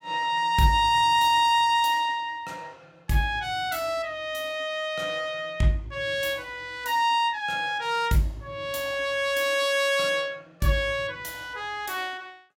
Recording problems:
none

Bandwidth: 16.5 kHz